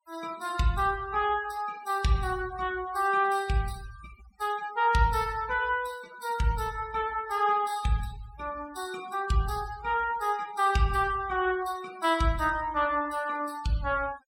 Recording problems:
denoising artefacts; signal-to-artefact ratio 20 dB

